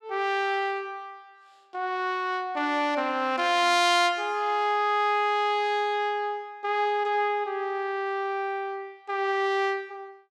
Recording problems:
none

